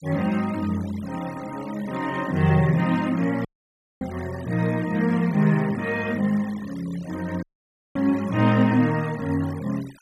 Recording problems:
noise reduction artefacts; signal-to-artefact ratio 20 dB
audio cutting out; at 3.5 s for 0.5 s and at 7.5 s for 0.5 s

